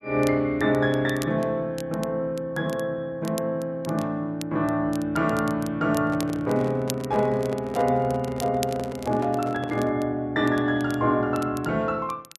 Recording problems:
crackle; vinyl, SNR 19 dB
microphone handling noise; from 6 to 10 s; peak -7 dB vs average level

